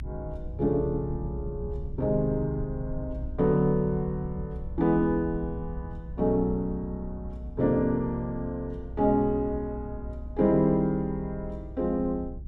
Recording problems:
rumble; below 78 Hz, strongest tone 60 Hz, SNR 11 dB

